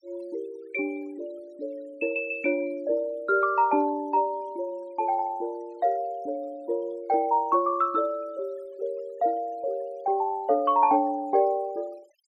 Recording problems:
noise reduction artefacts; signal-to-artefact ratio 28 dB

